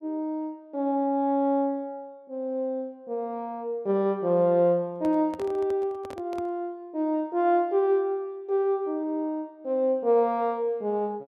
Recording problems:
handling noise; from 5 to 6.5 s; peak -11 dB vs average level

